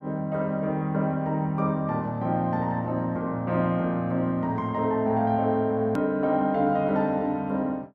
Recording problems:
edit click; at 6 s

